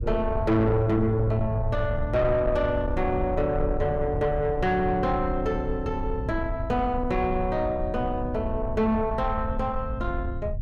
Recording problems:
distortion; soft clipping, signal-to-distortion ratio 12 dB
low-frequency rumble; below 98 Hz, SNR 7 dB

